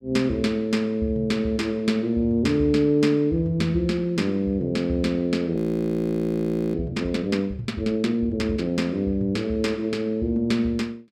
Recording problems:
frozen audio; at 5.5 s for 1 s

